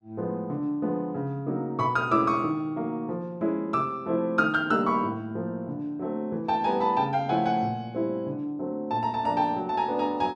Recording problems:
none

